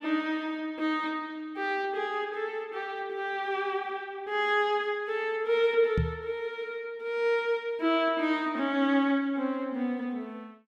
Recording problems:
microphone thump; at 6 s; peak +4 dB vs average level

